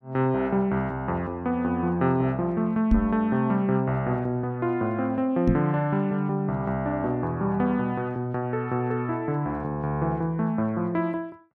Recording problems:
knock on the microphone; at 3 s and at 5.5 s; peak +6 dB vs average level

